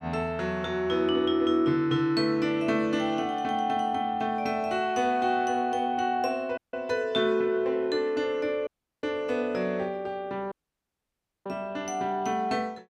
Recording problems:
dropout; at 6.5 s, at 8.5 s and at 11 s for 1 s

